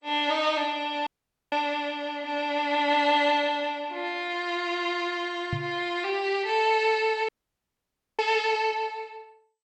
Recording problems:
lossy compression; MP2, then MP3, log-spectral distance 3 dB, nothing above 8 kHz
audio cutting out; at 1 s and at 7.5 s for 1 s
microphone bump; at 5.5 s; peak -1 dB vs average level

